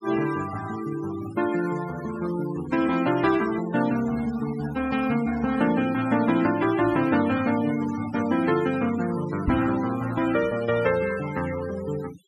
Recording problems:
denoising artefacts; signal-to-artefact ratio 13 dB
microphone bump; at 9.5 s; peak +3 dB vs average level

